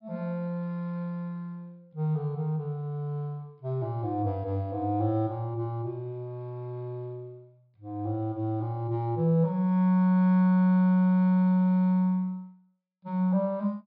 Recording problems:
low-pass filter; nothing above 5.5 kHz

